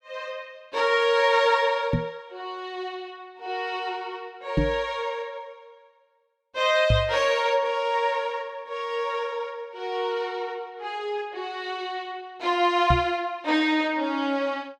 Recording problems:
microphone thump; 4 times, first at 2 s; peak +7 dB vs average level

